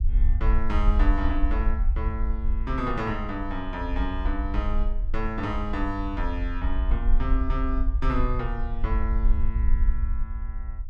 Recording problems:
rumble; below 52 Hz, SNR -3 dB

